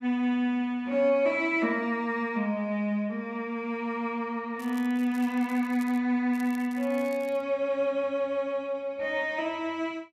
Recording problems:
crackle; from 4.5 to 6 s and from 6.5 to 7.5 s; loose cable, SNR 24 dB

